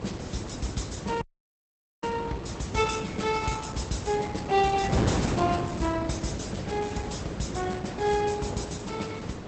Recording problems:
codec artefacts; Opus, log-spectral distance 5 dB, nothing above 8 kHz
wind noise; below 550 Hz, SNR 4 dB
dropout; at 1 s for 1 s

